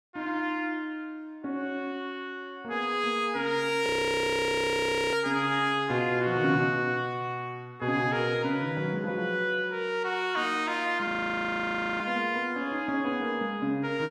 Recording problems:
audio freezing; at 4 s for 1.5 s and at 11 s for 1 s

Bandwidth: 14.5 kHz